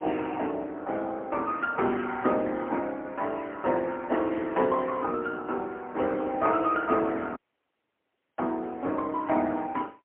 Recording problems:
telephone audio; 220 Hz to 3.2 kHz, AMR-NB, then MP3
dropout; at 7.5 s for 1 s

